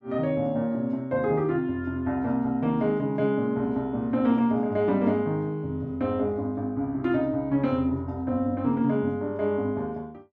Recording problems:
none

